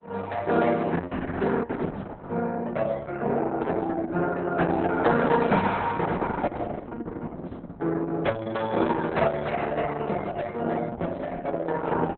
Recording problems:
codec artefacts; Opus, log-spectral distance 4 dB, nothing above 3.8 kHz

